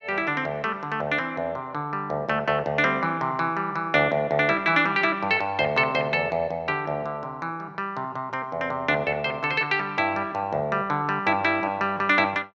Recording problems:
none

